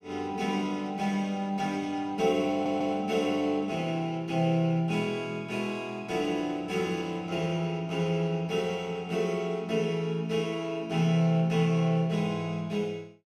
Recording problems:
stutter; at 2.5 s

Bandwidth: 14 kHz